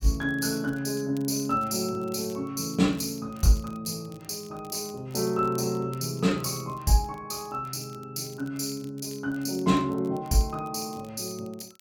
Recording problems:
crackling; vinyl, SNR 26 dB

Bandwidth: 17 kHz